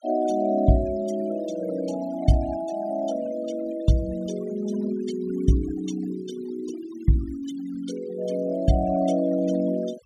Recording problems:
noise reduction artefacts; signal-to-artefact ratio 17 dB

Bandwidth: 14.5 kHz